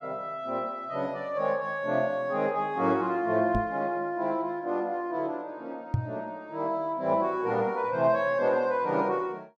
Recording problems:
microphone thump; at 3.5 s and at 6 s; peak +5 dB vs average level

